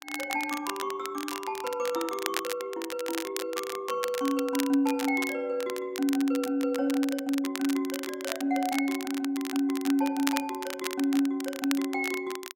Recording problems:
crackle; vinyl, SNR 9 dB

